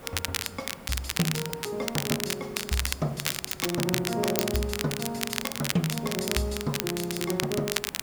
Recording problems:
background hiss; SNR 15 dB
crackling; vinyl, SNR 0 dB

